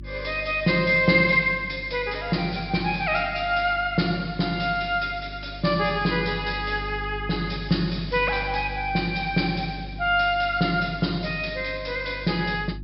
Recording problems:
low-pass filter; nothing above 5.3 kHz
hum; 50 Hz, harmonics up to 350 Hz, SNR 15 dB

